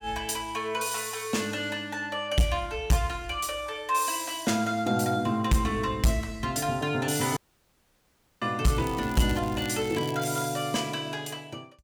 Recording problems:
distortion; hard clipping, uneven, signal-to-distortion ratio 12 dB
dropout; at 7.5 s for 1 s
crackling; from 8.5 to 10 s; loose cable, SNR 17 dB

